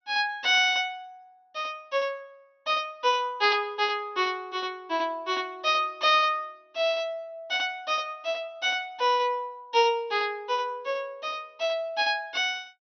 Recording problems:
treble cut off; nothing above 6.1 kHz

